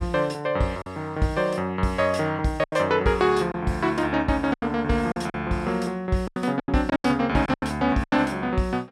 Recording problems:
lost packets; 8% of the sound replaced, filled with silence

